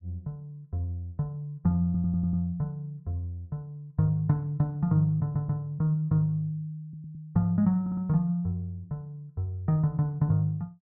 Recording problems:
audio stuttering; 4 times, first at 2 s

